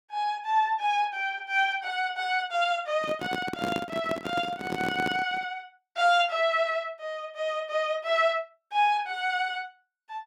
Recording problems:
microphone handling noise; from 3 to 5.5 s; peak 0 dB vs average level

